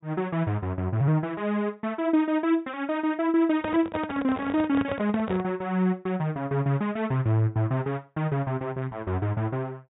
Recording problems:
low-pass filter; nothing above 4 kHz
handling noise; from 3.5 to 5.5 s; peak -2 dB vs average level

